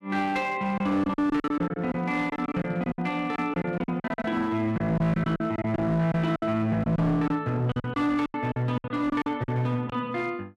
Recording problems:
distortion; hard clipping, uneven, signal-to-distortion ratio 10 dB
packet loss; 13% of the sound replaced, filled with silence

